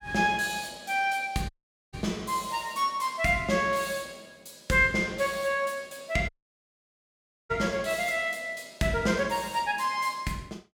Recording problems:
dropout; at 1.5 s and at 6.5 s for 1 s

